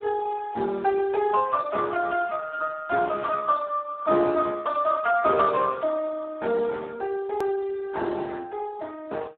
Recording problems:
telephone audio; 240 Hz to 3.6 kHz, Speex
click at an edit; at 7.5 s

